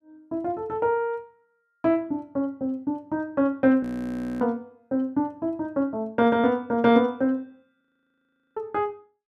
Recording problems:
frozen audio; at 4 s for 0.5 s and at 8 s for 1 s

